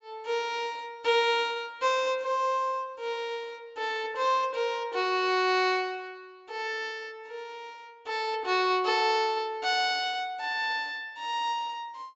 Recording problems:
treble cut off; nothing above 8 kHz

